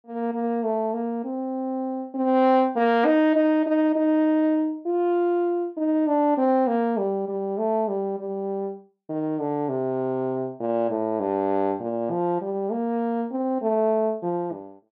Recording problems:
none

